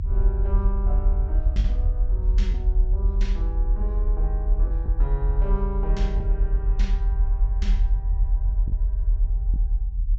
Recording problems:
treble missing; nothing above 8 kHz
low-frequency rumble; below 46 Hz, strongest tone 44 Hz, SNR -12 dB
packet loss; 2% of the sound replaced, filled with the last packet

